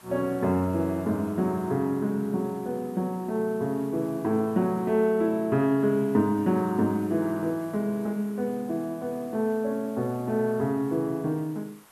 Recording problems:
hiss; SNR 25 dB

